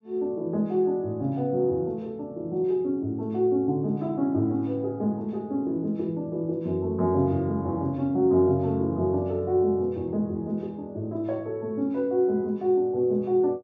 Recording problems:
treble missing; nothing above 8 kHz

